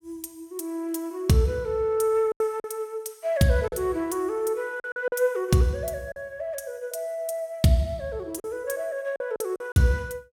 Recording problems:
lost packets; 5% of the sound replaced, filled with silence

